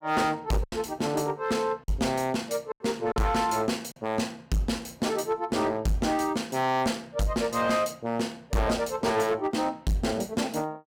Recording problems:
distorted audio; hard clipping, signal-to-distortion ratio 8 dB
lost packets; 2% of the sound replaced, filled with silence

